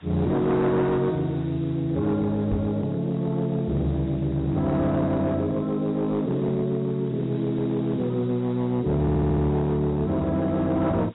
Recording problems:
lossy compression; AAC, log-spectral distance 13 dB, nothing above 3.4 kHz
distorted audio; hard clipping, signal-to-distortion ratio 12 dB
background hiss; SNR 28 dB
microphone bump; at 2.5 s; peak 0 dB vs average level
stutter; at 9 s

